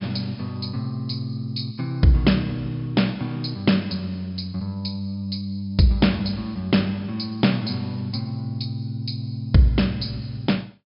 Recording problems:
treble cut off; nothing above 5.5 kHz

